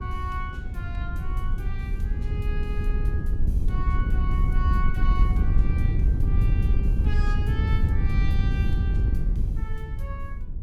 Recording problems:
wind on the microphone; below 84 Hz, SNR -12 dB

